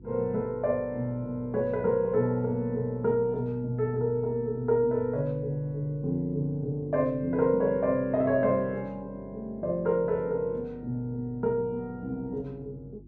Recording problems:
hum; 50 Hz, harmonics up to 350 Hz, SNR 21 dB

